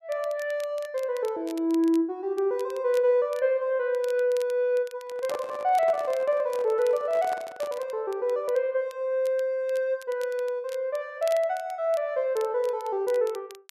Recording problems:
crackling; vinyl, SNR 23 dB
handling noise; from 5 to 8 s; peak -5 dB vs average level

